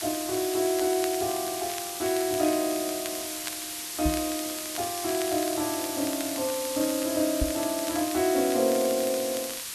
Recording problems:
hiss; slope +2 dB per octave, SNR 4 dB
crackle; vinyl, SNR 15 dB
microphone thump; at 4 s and at 7.5 s; peak +3 dB vs average level

